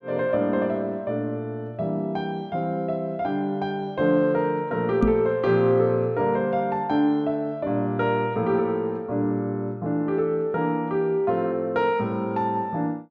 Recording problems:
microphone bump; at 5 s; peak +6 dB vs average level

